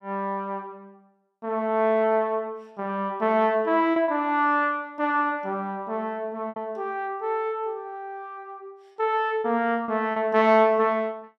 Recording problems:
lost packets; 3% of the sound replaced, filled with repeated pitch periods

